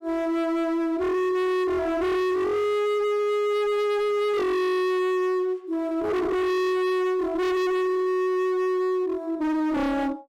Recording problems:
distortion; hard clipping, uneven, signal-to-distortion ratio 6 dB

